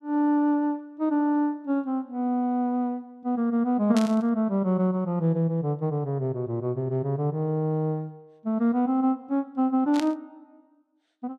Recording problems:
static burst; at 4 s and at 10 s; peak -4 dB vs average level

